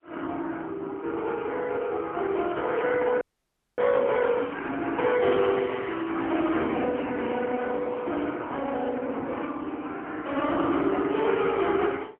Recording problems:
phone line; 190 Hz to 3.6 kHz, AMR-NB, then MP3
audio freezing; at 3 s for 0.5 s

